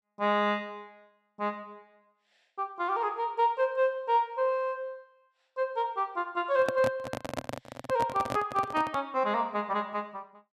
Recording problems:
microphone handling noise; from 6.5 to 9 s; peak +1 dB vs average level

